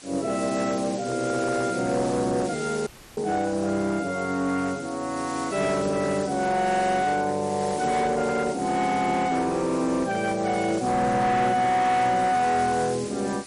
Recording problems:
lossy codec; MP3, log-spectral distance 8 dB, nothing above 10.4 kHz
distorted audio; hard clipping, uneven, signal-to-distortion ratio 11 dB
hiss; SNR 15 dB
audio cutting out; at 3 s

